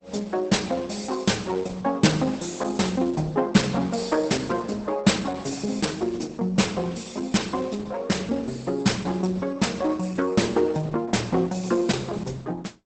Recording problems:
lossy compression; Opus, log-spectral distance 5 dB, nothing above 8.2 kHz

